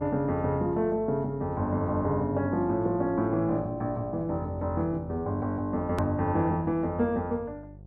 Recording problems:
hum; 50 Hz, harmonics up to 550 Hz, SNR 18 dB
hard cut with a click; at 6 s

